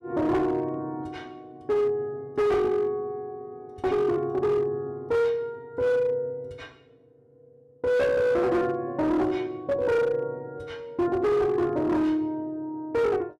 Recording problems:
distorted audio; hard clipping, uneven, signal-to-distortion ratio 10 dB

